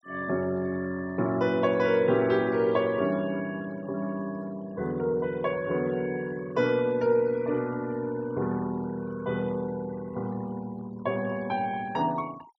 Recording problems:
noise reduction artefacts; signal-to-artefact ratio 23 dB

